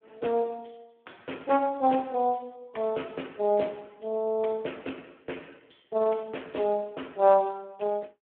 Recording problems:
phone line; 240 Hz to 3.4 kHz, Speex

